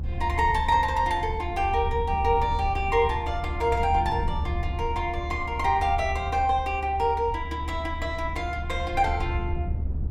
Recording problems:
rumble; below 76 Hz, SNR 6 dB

